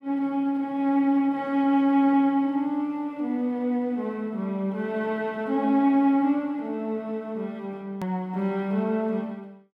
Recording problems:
click at an edit; at 8 s

